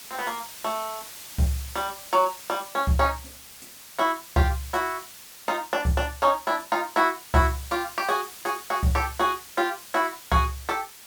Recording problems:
background hiss; slope +1 dB per octave, SNR 15 dB

